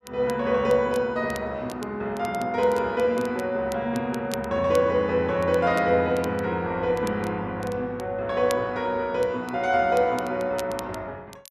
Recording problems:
crackle; vinyl, SNR 21 dB

